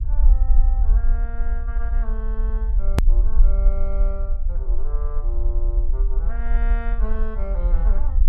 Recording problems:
low-frequency rumble; below 46 Hz, SNR -15 dB
hard cut with a click; at 3 s

